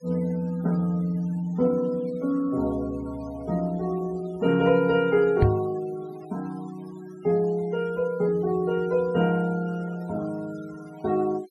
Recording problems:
denoising artefacts; signal-to-artefact ratio 23 dB
microphone thump; at 5.5 s; peak +8 dB vs average level

